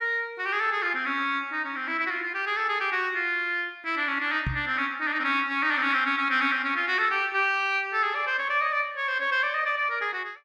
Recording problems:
microphone thump; at 4.5 s; peak -1 dB vs average level

